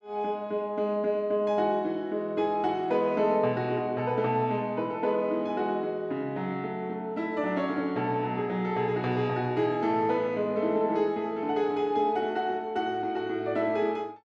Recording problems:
none

